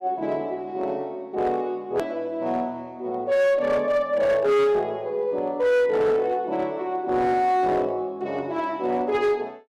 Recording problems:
distorted audio; hard clipping, signal-to-distortion ratio 11 dB
hard cut with a click; at 2 s

